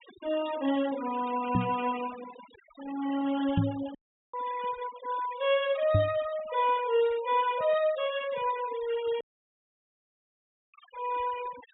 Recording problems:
treble cut off; nothing above 4 kHz
noise reduction artefacts; signal-to-artefact ratio 17 dB
microphone thump; at 1.5 s, at 3.5 s and at 6 s; peak +7 dB vs average level
audio cutting out; at 4 s and at 9 s for 1.5 s

